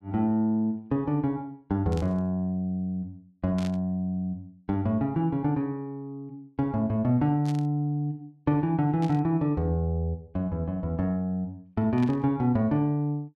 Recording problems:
static burst; 5 times, first at 2 s; peak -11 dB vs average level

